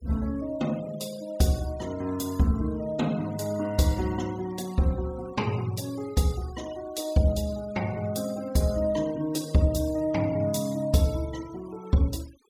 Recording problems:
denoising artefacts; signal-to-artefact ratio 20 dB

